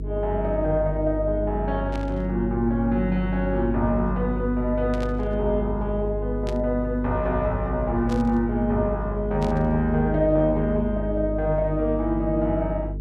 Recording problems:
hum; 50 Hz, harmonics up to 450 Hz, SNR 6 dB
static burst; 5 times, first at 2 s; peak -11 dB vs average level

